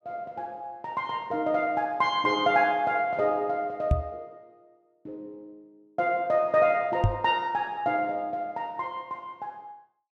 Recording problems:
knock on the microphone; at 4 s and at 7 s; peak +7 dB vs average level

